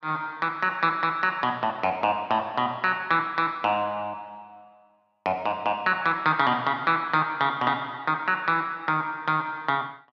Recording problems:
none

